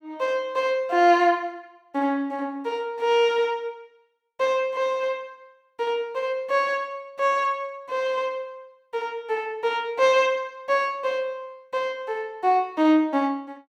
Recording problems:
none

